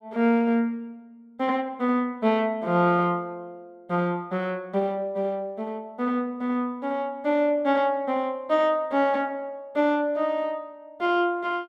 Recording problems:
none

